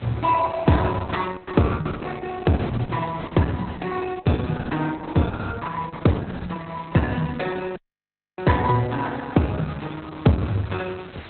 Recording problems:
lossy compression; Opus, log-spectral distance 6 dB, nothing above 4 kHz
hiss; SNR 19 dB
audio cutting out; at 8 s for 0.5 s

